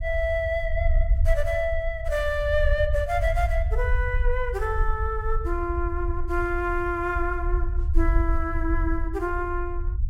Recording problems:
low-frequency rumble; below 64 Hz, SNR 1 dB

